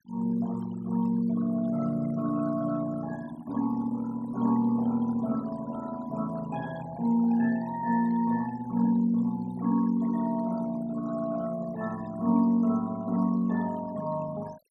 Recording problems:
noise reduction artefacts; signal-to-artefact ratio 18 dB

